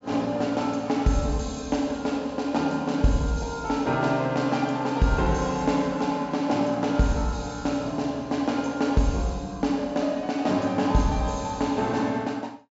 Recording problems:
low-pass filter; nothing above 7.5 kHz

